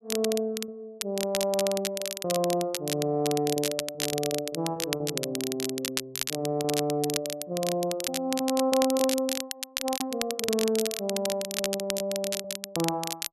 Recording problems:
crackling; vinyl, SNR 3 dB
packet loss; 7% of the sound replaced, filled with repeated pitch periods

